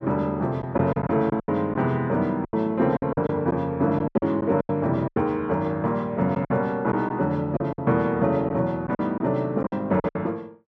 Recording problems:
lost packets; 10% of the sound replaced, filled with silence

